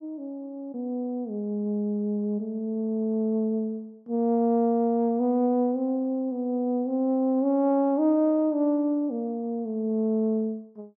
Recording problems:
none

